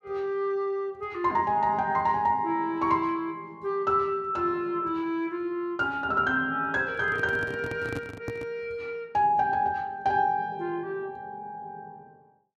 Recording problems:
microphone handling noise; from 7 to 8.5 s; peak -4 dB vs average level

